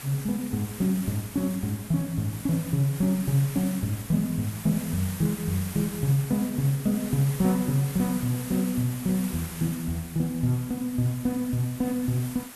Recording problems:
background hiss; slope -2 dB per octave, SNR 13 dB

